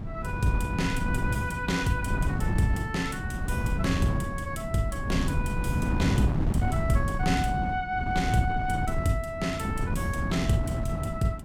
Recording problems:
wind noise; below 190 Hz, SNR 1 dB

